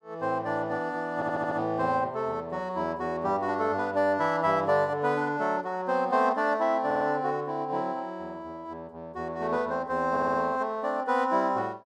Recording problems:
audio stuttering; at 1 s, at 7 s and at 10 s

